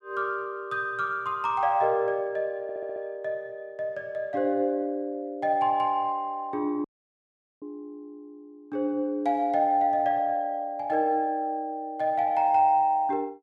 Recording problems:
stutter; at 2.5 s
audio cutting out; at 7 s for 1 s

